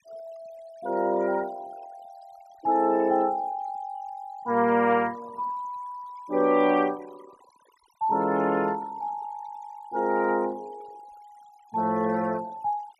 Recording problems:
noise reduction artefacts; signal-to-artefact ratio 24 dB

